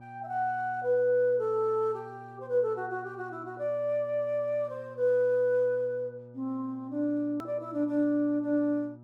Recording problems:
electrical hum; 60 Hz, harmonics up to 1.2 kHz, SNR 21 dB
click at an edit; at 7.5 s

